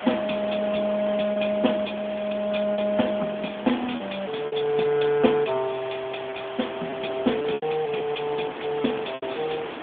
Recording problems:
telephone audio; 220 Hz to 3.5 kHz, AMR-NB
hiss; SNR 11 dB
wind on the microphone; below 740 Hz, SNR 15 dB
packet loss; 5% of the sound replaced, filled with repeated pitch periods

